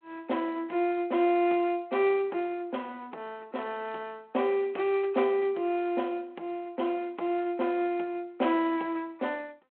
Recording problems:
telephone audio; 280 Hz to 3.4 kHz, G.726

